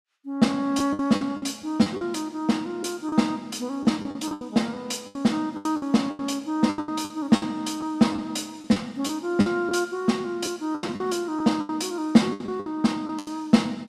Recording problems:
lost packets; 13% of the sound replaced, filled with the last packet

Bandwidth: 14.5 kHz